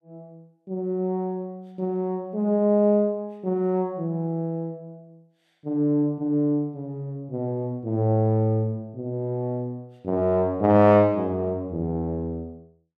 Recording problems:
none

